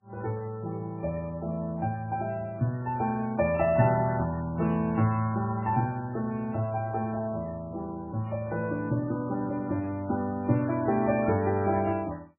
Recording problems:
codec artefacts; MP3, log-spectral distance 2 dB, nothing above 2.4 kHz

